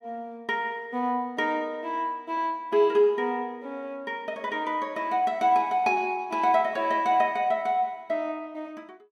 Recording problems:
none

